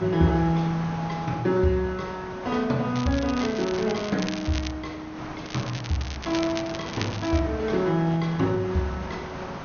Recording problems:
treble missing; nothing above 6.5 kHz
hiss; SNR 11 dB
crackling; from 3 to 4.5 s and from 5.5 to 7.5 s; loose cable, SNR 11 dB

